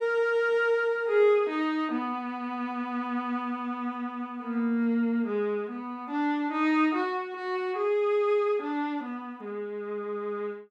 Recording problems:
none

